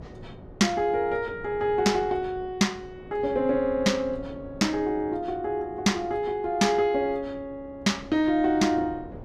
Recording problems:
wind noise; below 430 Hz, SNR 19 dB

